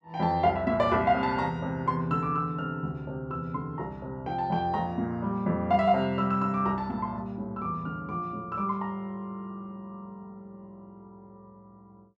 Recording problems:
none

